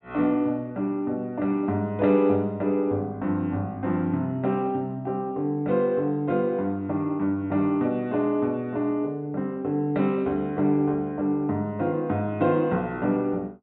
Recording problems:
treble cut off; nothing above 4 kHz

